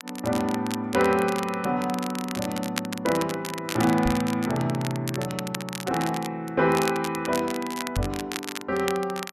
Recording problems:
crackle; vinyl, SNR 9 dB
microphone thump; at 4 s and at 8 s; peak +1 dB vs average level

